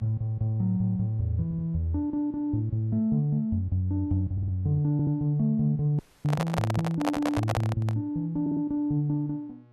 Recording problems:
hum; 60 Hz, harmonics up to 1.3 kHz, SNR 29 dB
stutter; 4 times, first at 1.5 s
handling noise; from 6 to 8 s; peak +2 dB vs average level
dropout; at 6 s

